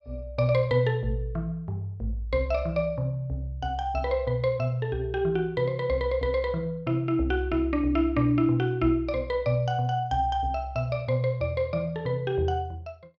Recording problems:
none

